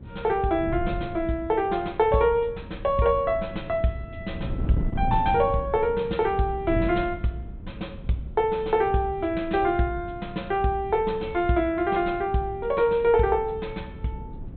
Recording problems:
treble missing; nothing above 4 kHz
wind noise; below 160 Hz, SNR 12 dB

